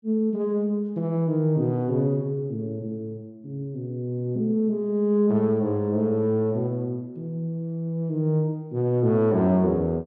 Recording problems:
none

